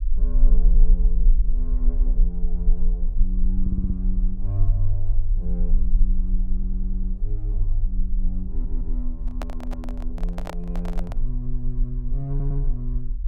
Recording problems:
rumble; below 38 Hz, strongest tone 22 Hz, SNR -7 dB
audio stuttering; 4 times, first at 3.5 s
handling noise; from 9 to 11 s; peak +4 dB vs average level

